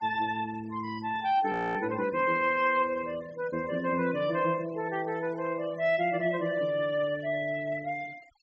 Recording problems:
low-pass filter; nothing above 8 kHz
noise reduction artefacts; signal-to-artefact ratio 22 dB
frozen audio; at 1.5 s

